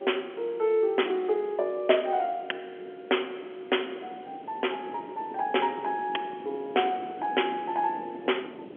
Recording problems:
telephone audio; 300 Hz to 3.3 kHz, G.711
background hiss; SNR 30 dB
wind noise; below 510 Hz, SNR 17 dB

